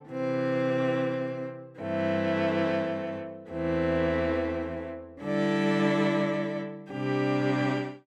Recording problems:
none

